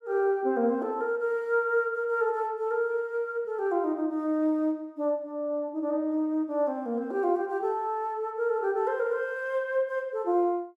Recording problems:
none

